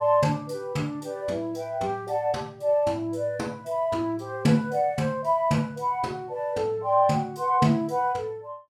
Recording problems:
none

